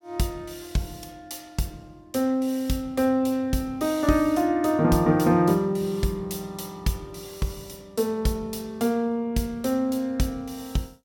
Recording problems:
none

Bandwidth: 17 kHz